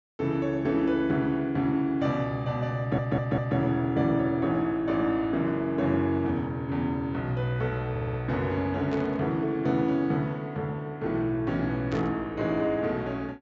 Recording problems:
treble missing; nothing above 8 kHz
audio stuttering; at 3 s and at 8 s
burst of static; at 9 s and at 12 s; peak -11 dB vs average level

